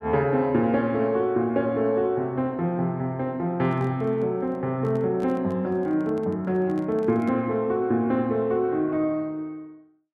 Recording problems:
microphone handling noise; from 3.5 to 7.5 s; peak -8 dB vs average level

